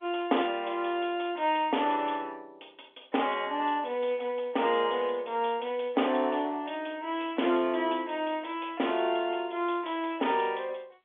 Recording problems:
telephone audio; 260 Hz to 3.6 kHz, G.711

